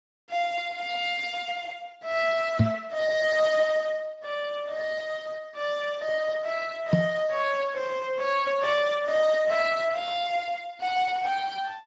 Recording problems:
codec artefacts; Speex, log-spectral distance 4 dB
knock on the microphone; at 2.5 s and at 7 s; peak +9 dB vs average level

